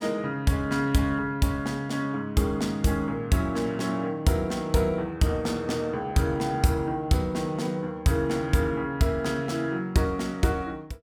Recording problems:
none

